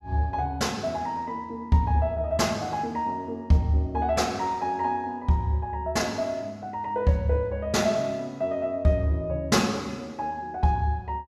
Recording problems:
none

